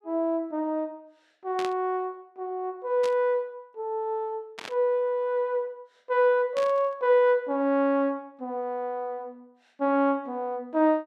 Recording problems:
static burst; 4 times, first at 1.5 s; peak -6 dB vs average level

